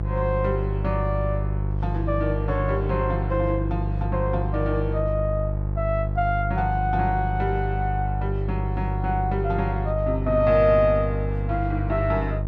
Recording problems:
hum; 50 Hz, harmonics up to 500 Hz, SNR 1 dB

